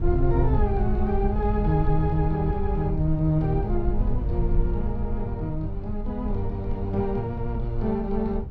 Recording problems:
low-frequency rumble; below 76 Hz, SNR 2 dB

